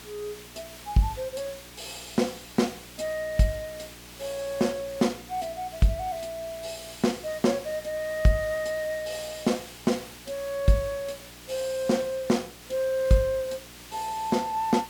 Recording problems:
electrical hum; 60 Hz, harmonics up to 420 Hz, SNR 23 dB
hiss; slope -1 dB per octave, SNR 15 dB

